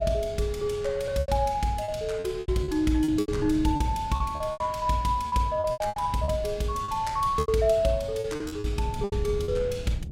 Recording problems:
wind noise; below 140 Hz, SNR 13 dB
packet loss; 13% of the sound replaced, filled with repeated pitch periods

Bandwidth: 16 kHz